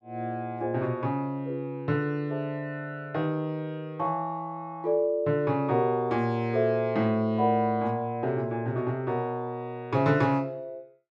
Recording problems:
none

